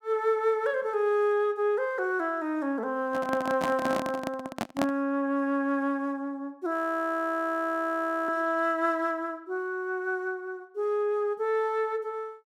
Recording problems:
handling noise; from 3 to 5 s; peak +4 dB vs average level
audio freezing; at 6.5 s for 1.5 s

